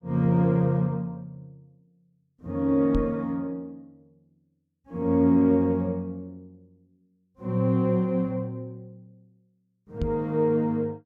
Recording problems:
microphone thump; at 3 s and at 10 s; peak -1 dB vs average level

